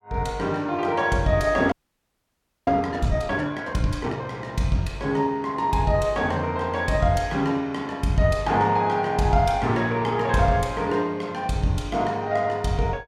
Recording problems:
audio freezing; at 1.5 s for 1 s

